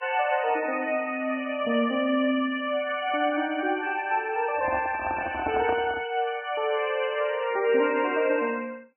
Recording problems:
codec artefacts; MP3, log-spectral distance 5 dB, nothing above 2.7 kHz
microphone handling noise; from 4.5 to 6 s; peak -1 dB vs average level

